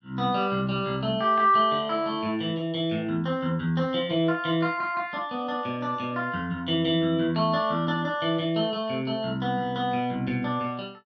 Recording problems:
none

